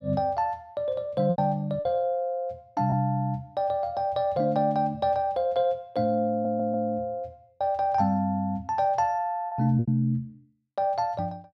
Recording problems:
lost packets; 3% of the sound replaced, filled with repeated pitch periods
stutter; at 6.5 s

